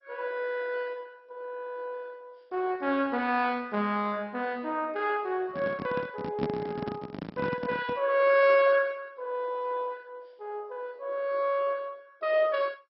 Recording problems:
codec artefacts; MP2, log-spectral distance 3 dB, nothing above 4.5 kHz
handling noise; from 5.5 to 8 s; peak +2 dB vs average level

